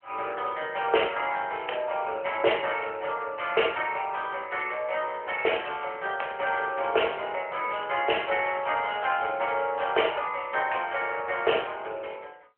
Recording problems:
telephone audio; 340 Hz to 3.2 kHz, AMR-NB

